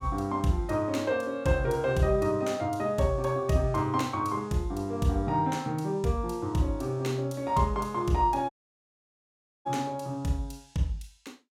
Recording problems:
audio cutting out; at 8.5 s for 1 s

